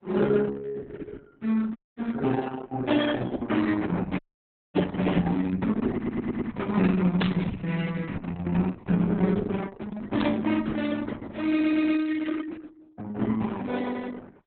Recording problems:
codec artefacts; Opus, then Opus, log-spectral distance 4 dB, nothing above 3.6 kHz
dropout; at 2 s and at 4 s for 0.5 s
stutter; at 6 s and at 11 s
static burst; at 7 s and at 10 s; peak -2 dB vs average level

